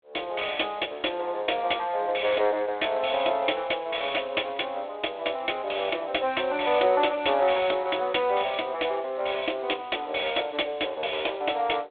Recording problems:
telephone audio; 260 Hz to 3.6 kHz, G.726

